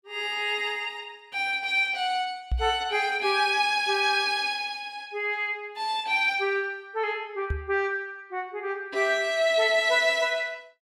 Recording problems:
microphone bump; at 2.5 s and at 7.5 s; peak +1 dB vs average level

